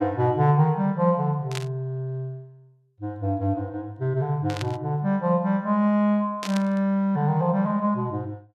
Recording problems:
static burst; at 1.5 s, at 4.5 s and at 6.5 s; peak -4 dB vs average level

